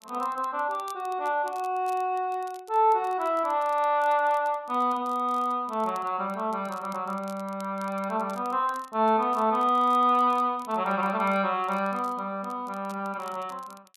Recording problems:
crackling; vinyl, SNR 27 dB

